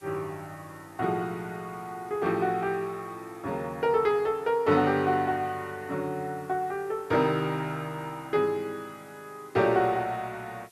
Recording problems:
hiss; slope 0 dB per octave, SNR 28 dB

